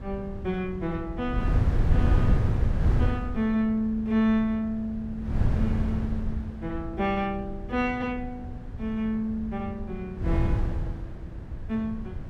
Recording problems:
wind noise; below 130 Hz, SNR 1 dB

